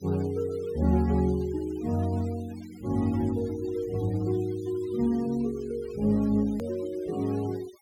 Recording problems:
denoising artefacts; signal-to-artefact ratio 22 dB
edit click; at 6.5 s

